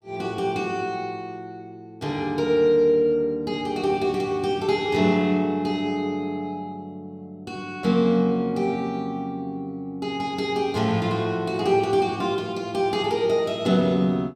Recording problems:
none

